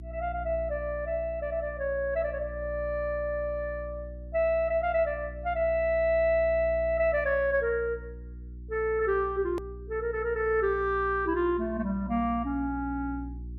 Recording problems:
hum; 60 Hz, harmonics up to 360 Hz, SNR 13 dB
edit click; at 9.5 s

